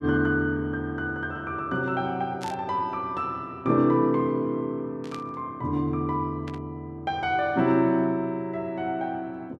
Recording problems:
static burst; at 2.5 s, at 5 s and at 6.5 s; peak -9 dB vs average level

